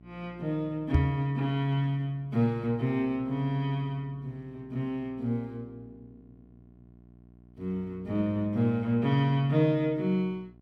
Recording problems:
hum; 60 Hz, harmonics up to 720 Hz, SNR 25 dB
microphone thump; at 1 s; peak +8 dB vs average level

